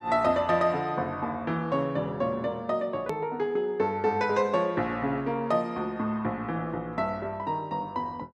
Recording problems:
hard cut with a click; at 3 s

